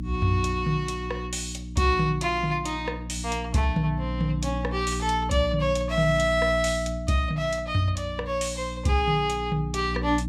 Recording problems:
electrical hum; 60 Hz, harmonics up to 300 Hz, SNR 7 dB

